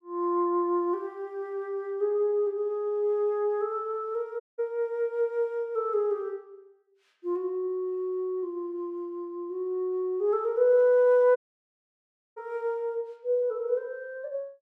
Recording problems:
dropout; at 4.5 s and at 11 s for 1 s

